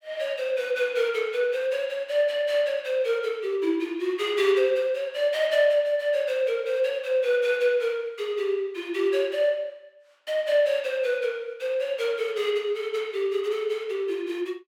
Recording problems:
none

